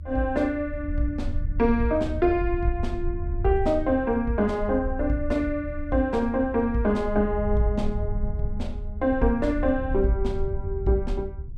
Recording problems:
low-frequency rumble; below 76 Hz, SNR 7 dB

